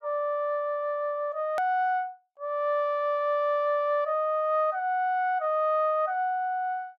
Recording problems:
edit click; at 1.5 s

